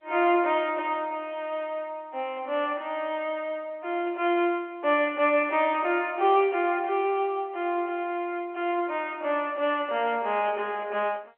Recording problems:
telephone audio; 280 Hz to 3.3 kHz, G.711

